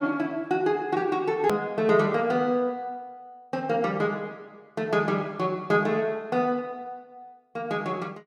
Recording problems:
edit click; at 1.5 s

